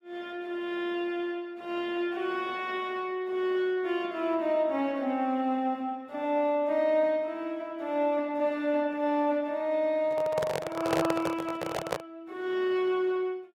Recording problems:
lossy compression; AAC, log-spectral distance 2 dB, nothing above 15.5 kHz
handling noise; from 10 to 12 s; peak +4 dB vs average level

